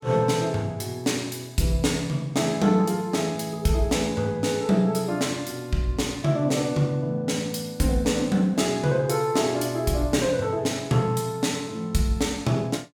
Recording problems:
none

